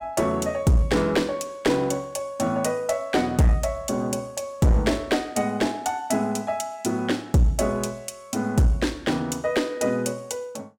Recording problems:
distortion; hard clipping, uneven, signal-to-distortion ratio 9 dB

